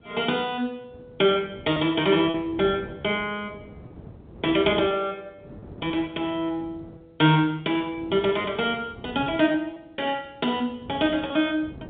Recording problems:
phone line; 260 Hz to 3.6 kHz, G.711
wind noise; below 370 Hz, SNR 20 dB
lost packets; 4% of the sound replaced, filled with repeated pitch periods

